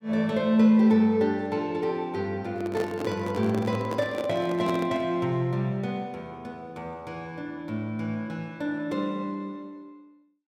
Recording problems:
handling noise; from 2.5 to 5 s; peak -2 dB vs average level

